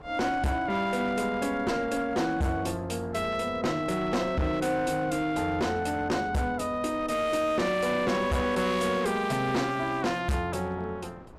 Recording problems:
distorted audio; hard clipping, uneven, signal-to-distortion ratio 8 dB
wind noise; below 740 Hz, SNR 20 dB

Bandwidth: 14.5 kHz